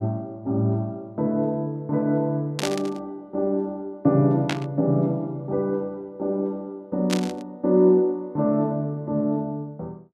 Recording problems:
static burst; at 2.5 s, at 4.5 s and at 7 s; peak +1 dB vs average level

